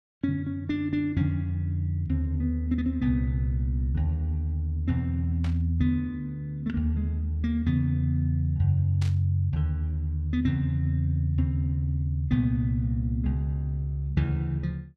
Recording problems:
burst of static; at 5.5 s and at 9 s; peak -10 dB vs average level

